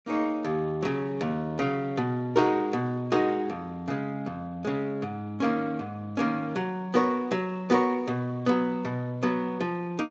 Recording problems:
codec artefacts; Speex, log-spectral distance 2 dB

